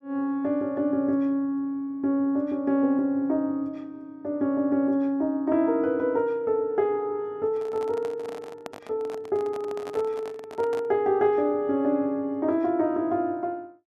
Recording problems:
microphone handling noise; from 7.5 to 11 s; peak -7 dB vs average level

